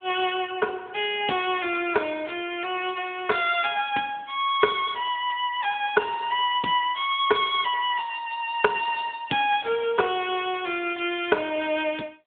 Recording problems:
phone line; 240 Hz to 3.5 kHz, AMR-NB

